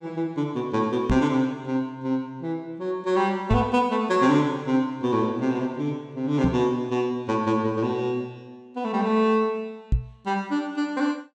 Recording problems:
microphone bump; 4 times, first at 1 s; peak +5 dB vs average level

